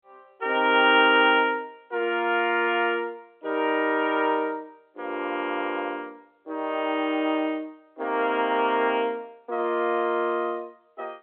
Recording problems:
phone line; 240 Hz to 3.4 kHz, G.711

